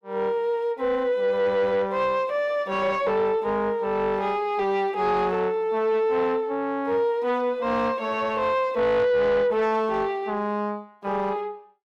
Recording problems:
distortion; soft clipping, signal-to-distortion ratio 12 dB

